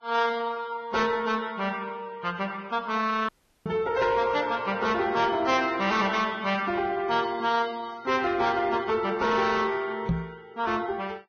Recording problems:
lossy codec; Vorbis, log-spectral distance 3 dB, nothing above 6.3 kHz
distortion; soft clipping, signal-to-distortion ratio 11 dB
audio cutting out; at 3.5 s
knock on the microphone; at 3.5 s and at 10 s; peak +4 dB vs average level

